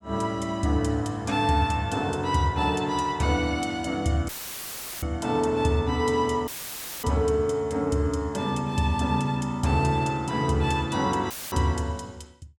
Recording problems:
audio cutting out; at 4.5 s for 0.5 s, at 6.5 s for 0.5 s and at 11 s; filled with static

